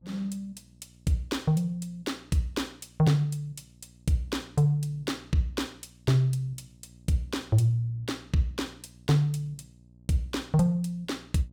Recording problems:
hum; 60 Hz, harmonics up to 600 Hz, SNR 26 dB

